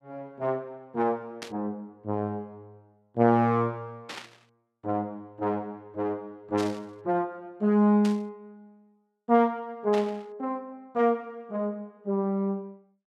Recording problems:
static burst; 5 times, first at 1.5 s; peak -6 dB vs average level

